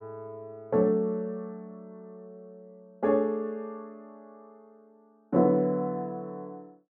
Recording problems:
none

